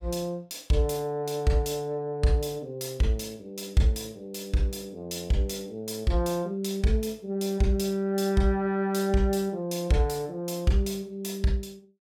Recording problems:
none

